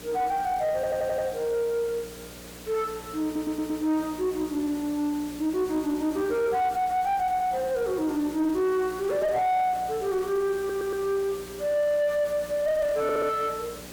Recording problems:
distortion; soft clipping, signal-to-distortion ratio 10 dB
electrical hum; 60 Hz, harmonics up to 600 Hz, SNR 20 dB
hiss; slope -4 dB per octave, SNR 16 dB
stutter; 4 times, first at 1 s

